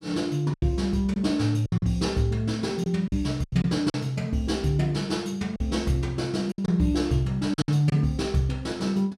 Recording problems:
packet loss; 7% of the sound replaced, filled with silence

